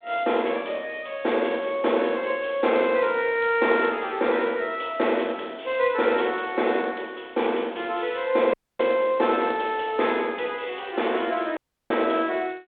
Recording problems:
telephone audio; 260 Hz to 3.6 kHz, G.726
dropout; at 8.5 s and at 12 s

